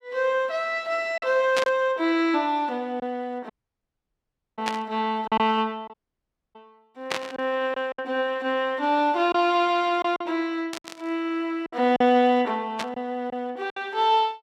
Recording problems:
packet loss; 5% of the sound replaced, filled with silence
static burst; 5 times, first at 1.5 s; peak +1 dB vs average level
dropout; at 3.5 s for 1 s and at 6 s for 0.5 s

